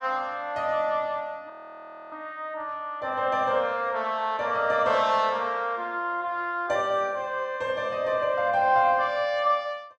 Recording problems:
frozen audio; at 1.5 s for 0.5 s

